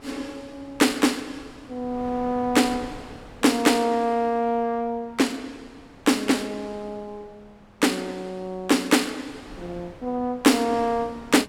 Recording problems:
wind noise; below 960 Hz, SNR 23 dB

